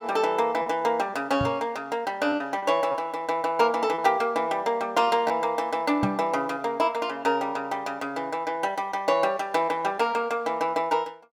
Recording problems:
packet loss; 3% of the sound replaced, filled with repeated pitch periods
microphone thump; at 1.5 s and at 6 s; peak +1 dB vs average level

